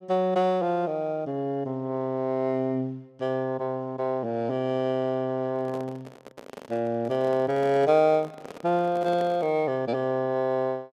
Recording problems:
handling noise; from 5.5 to 9.5 s; peak -8 dB vs average level

